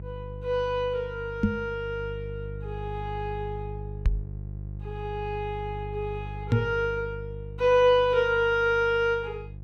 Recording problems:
hum; 50 Hz, harmonics up to 350 Hz, SNR 11 dB
microphone thump; at 1.5 s, at 4 s and at 6.5 s; peak +8 dB vs average level

